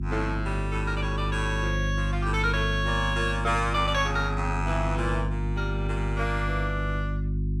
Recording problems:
mains hum; 50 Hz, harmonics up to 350 Hz, SNR 1 dB

